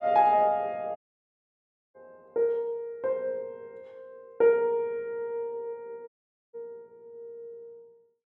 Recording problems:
audio cutting out; at 1 s for 1 s and at 6 s

